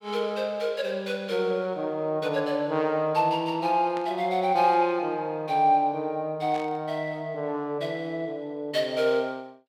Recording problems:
static burst; at 4 s and at 6.5 s; peak -11 dB vs average level

